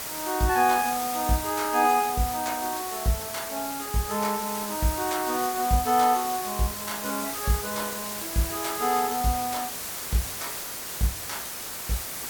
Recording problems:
hiss; slope -1 dB per octave, SNR 5 dB

